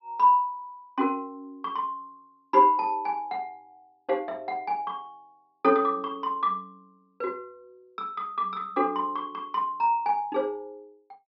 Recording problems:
treble cut off; nothing above 5.5 kHz

